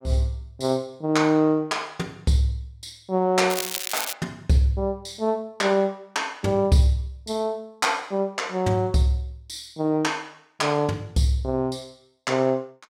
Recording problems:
crackling; at 3.5 s; loose cable, SNR 4 dB

